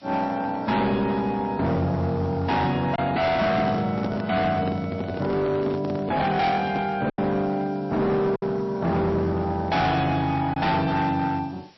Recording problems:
lossy codec; MP3, log-spectral distance 3 dB, nothing above 5.7 kHz
distorted audio; hard clipping, signal-to-distortion ratio 8 dB
background hiss; slope 0 dB per octave, SNR 30 dB
lost packets; 1.5% of the sound replaced, filled with silence
microphone handling noise; from 3 to 7 s; peak -2 dB vs average level

